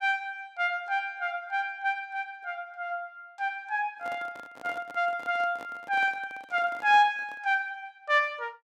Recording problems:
handling noise; from 4 to 7.5 s; peak -11 dB vs average level

